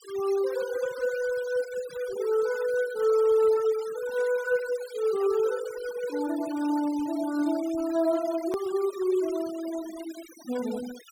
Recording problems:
noise reduction artefacts; signal-to-artefact ratio 17 dB
edit click; at 8.5 s

